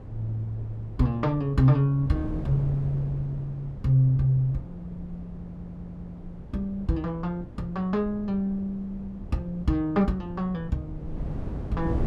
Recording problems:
wind on the microphone; below 190 Hz, SNR 13 dB
stutter; at 5.5 s

